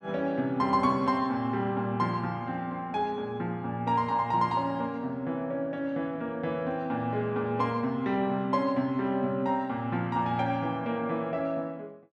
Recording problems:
none

